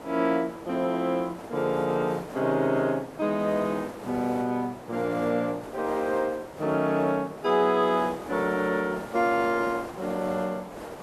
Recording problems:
hiss; SNR 13 dB

